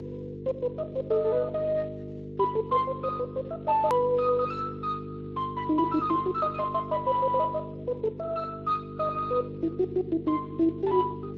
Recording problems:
lossy compression; MP3, then Speex, log-spectral distance 2 dB, nothing above 13.1 kHz
electrical hum; 50 Hz, harmonics up to 500 Hz, SNR 10 dB
edit click; at 4 s

